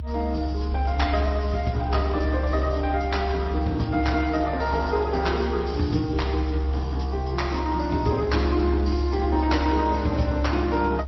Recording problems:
lossy codec; MP3, then Speex, log-spectral distance 2 dB
rumble; below 70 Hz, strongest tone 68 Hz, SNR 4 dB

